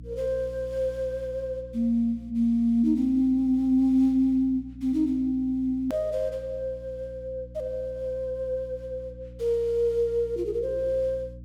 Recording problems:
hum; 60 Hz, harmonics up to 300 Hz, SNR 19 dB
hard cut with a click; at 6 s

